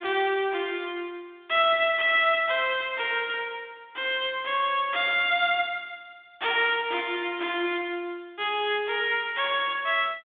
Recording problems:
telephone audio; 240 Hz to 3.6 kHz, G.726
static burst; at 5 s and at 7 s; peak -13 dB vs average level

